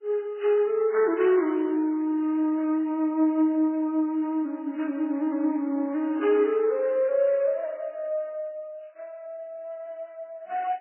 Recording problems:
lossy codec; Vorbis, then MP3, log-spectral distance 2 dB, nothing above 2.9 kHz

